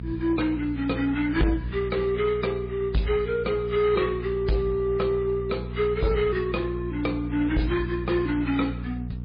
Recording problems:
codec artefacts; AAC, then MP3, log-spectral distance 3 dB, nothing above 4.4 kHz
distortion; soft clipping, signal-to-distortion ratio 11 dB
hum; 60 Hz, harmonics up to 420 Hz, SNR 9 dB

